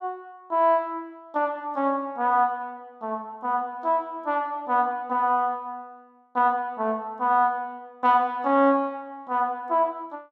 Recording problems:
none

